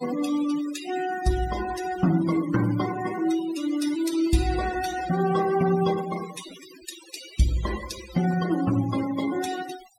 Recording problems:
denoising artefacts; signal-to-artefact ratio 11 dB

